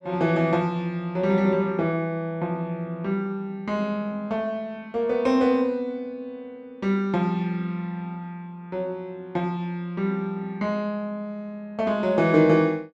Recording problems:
none

